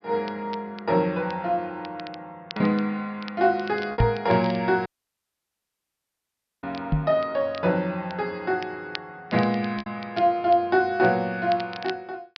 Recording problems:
treble cut off; nothing above 5.5 kHz
crackling; vinyl, SNR 19 dB
packet loss; 1.8% of the sound replaced, filled with repeated pitch periods
knock on the microphone; at 4 s and at 7 s; peak +6 dB vs average level
audio cutting out; at 5 s for 2 s

